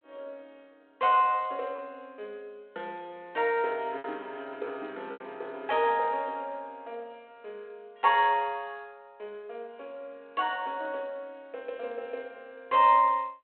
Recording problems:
phone line; 300 Hz to 3.5 kHz, G.726
lost packets; 1.2% of the sound replaced, filled with repeated pitch periods

